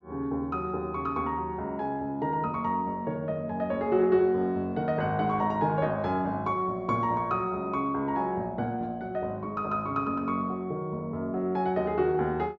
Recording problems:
treble cut off; nothing above 8 kHz

